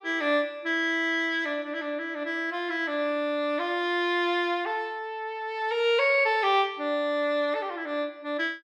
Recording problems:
none

